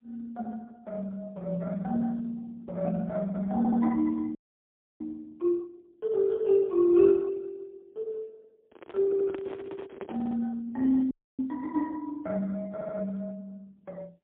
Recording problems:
telephone audio; 190 Hz to 2.6 kHz, AMR-NB, then MP3
audio stuttering; 4 times, first at 3.5 s
frozen audio; at 4.5 s for 0.5 s and at 11 s
handling noise; from 8.5 to 10 s; peak -8 dB vs average level

